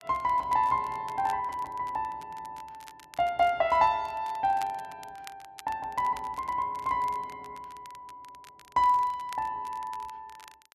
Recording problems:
crackle; vinyl, SNR 24 dB

